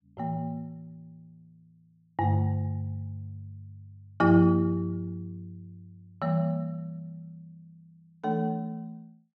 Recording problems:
none

